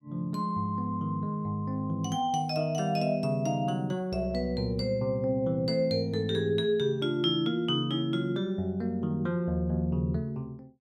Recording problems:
none

